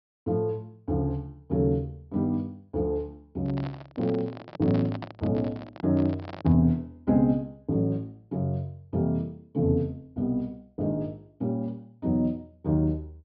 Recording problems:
treble cut off; nothing above 5.5 kHz
microphone handling noise; from 3.5 to 6.5 s; peak -5 dB vs average level

